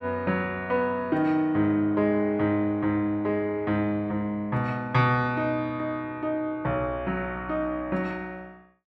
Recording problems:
none

